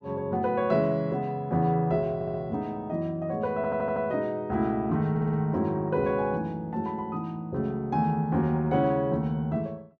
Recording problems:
audio stuttering; at 2 s, at 3.5 s and at 5 s

